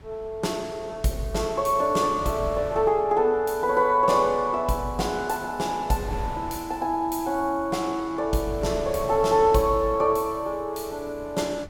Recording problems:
wind noise; below 390 Hz, SNR 18 dB

